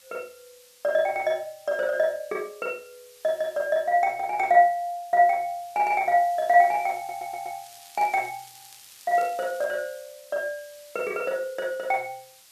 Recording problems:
background hiss; slope +3 dB per octave, SNR 24 dB
stutter; at 7 s
crackling; from 7.5 to 9.5 s; loose cable, SNR 25 dB

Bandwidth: 14 kHz